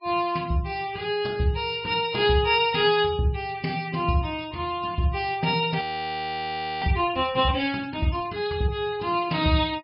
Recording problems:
treble cut off; nothing above 5.5 kHz
denoising artefacts; signal-to-artefact ratio 23 dB
audio freezing; at 6 s for 1 s

